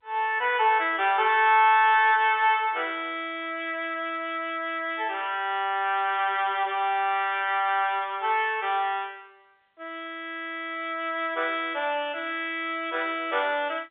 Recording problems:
phone line; 280 Hz to 3.6 kHz, G.711

